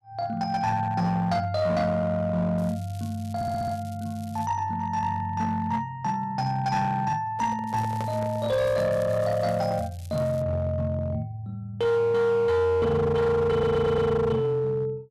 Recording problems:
distortion; hard clipping, uneven, signal-to-distortion ratio 11 dB
crackling; from 2.5 to 4.5 s and from 7.5 to 10 s; loose cable, SNR 24 dB
audio stuttering; at 3.5 s and at 14 s
handling noise; from 7.5 to 9 s; peak -6 dB vs average level

